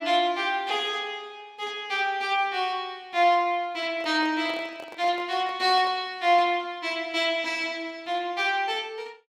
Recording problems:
handling noise; from 4 to 6 s; peak -11 dB vs average level

